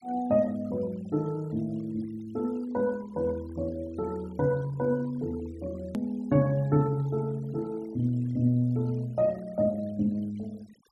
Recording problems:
noise reduction artefacts; signal-to-artefact ratio 25 dB
hard cut with a click; at 6 s

